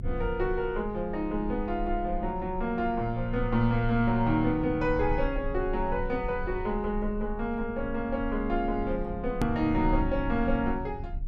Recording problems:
low-frequency rumble; below 56 Hz, strongest tone 30 Hz, SNR 9 dB
click at an edit; at 9.5 s

